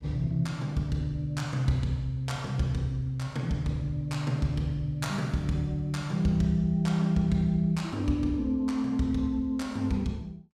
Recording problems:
none

